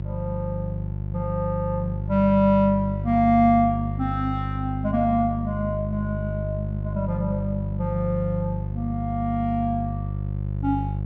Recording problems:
electrical hum; 50 Hz, harmonics up to 550 Hz, SNR 5 dB

